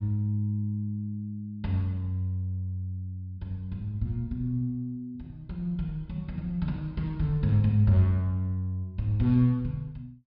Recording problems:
treble cut off; nothing above 5.5 kHz

